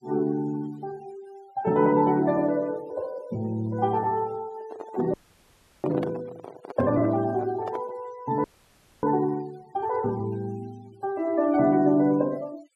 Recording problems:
noise reduction artefacts; signal-to-artefact ratio 23 dB
handling noise; from 4.5 to 8 s; peak -5 dB vs average level
audio freezing; at 5 s for 0.5 s and at 8.5 s for 0.5 s

